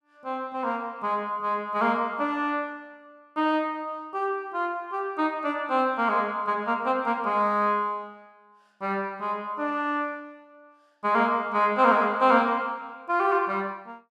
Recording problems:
none

